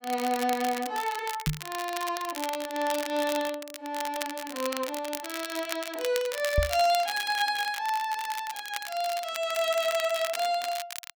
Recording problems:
crackling; vinyl, SNR 8 dB
knock on the microphone; at 1.5 s and at 6.5 s; peak +7 dB vs average level

